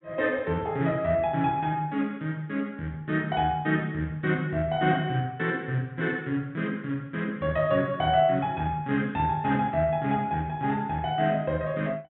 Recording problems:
treble cut off; nothing above 3.7 kHz

